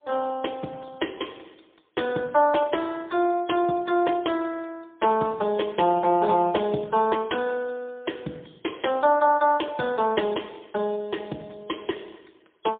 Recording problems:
phone line; 170 Hz to 3.4 kHz, AMR-NB, then MP3

